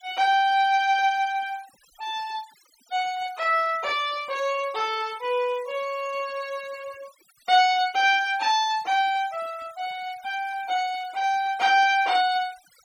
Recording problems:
denoising artefacts; signal-to-artefact ratio 22 dB

